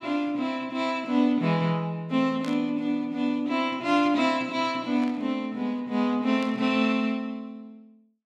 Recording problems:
static burst; at 2.5 s, at 5 s and at 6.5 s; peak -11 dB vs average level

